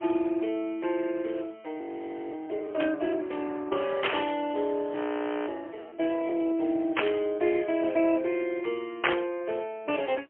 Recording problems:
telephone audio; 300 Hz to 3.3 kHz, AMR-NB, then MP3
frozen audio; at 2 s for 0.5 s and at 5 s for 0.5 s
burst of static; 4 times, first at 3 s; peak +10 dB vs average level

